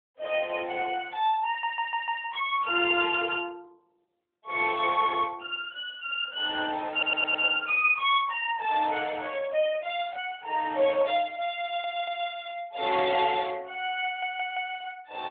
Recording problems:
telephone audio; 320 Hz to 3.6 kHz, AMR-NB
stutter; 4 times, first at 1.5 s

